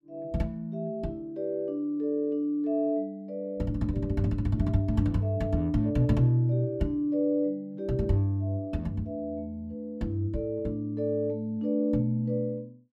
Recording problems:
none

